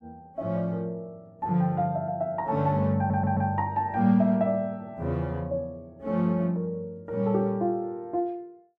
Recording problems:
stutter; at 3 s

